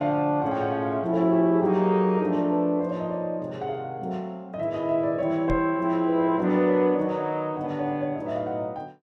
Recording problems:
microphone bump; at 5.5 s; peak -3 dB vs average level

